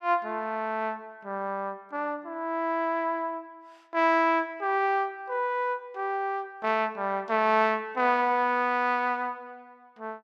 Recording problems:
none

